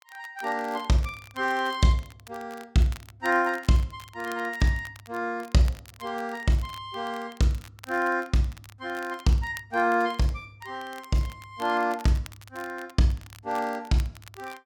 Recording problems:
crackling; vinyl, SNR 22 dB

